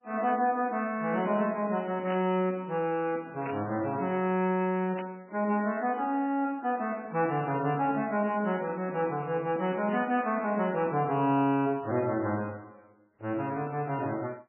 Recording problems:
codec artefacts; MP3, log-spectral distance 3 dB, nothing above 3 kHz
burst of static; 4 times, first at 2 s; peak -8 dB vs average level

